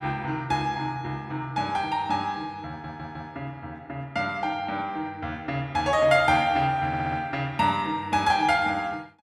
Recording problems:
stutter; at 2.5 s and at 7 s

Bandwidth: 14.5 kHz